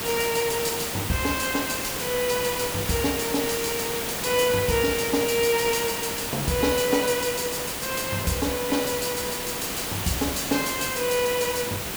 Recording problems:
background hiss; slope -3 dB per octave, SNR 3 dB

